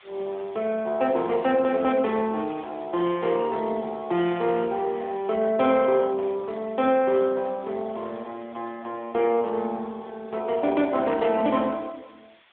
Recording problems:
phone line; 280 Hz to 3.7 kHz, AMR-NB
background hiss; SNR 28 dB

